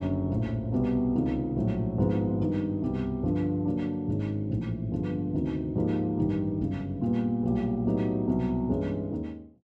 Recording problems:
none

